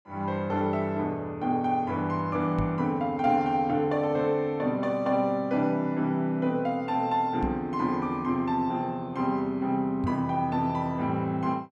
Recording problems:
knock on the microphone; at 2.5 s, at 7.5 s and at 10 s; peak 0 dB vs average level

